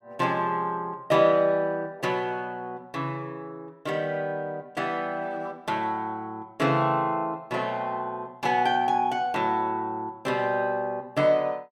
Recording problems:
none

